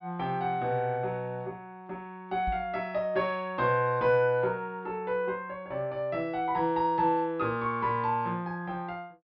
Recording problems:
treble missing; nothing above 5.5 kHz
knock on the microphone; at 2.5 s; peak -3 dB vs average level

